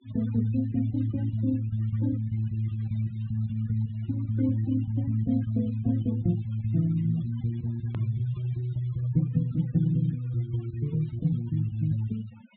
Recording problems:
treble cut off; nothing above 4 kHz
noise reduction artefacts; signal-to-artefact ratio 23 dB
edit click; at 8 s

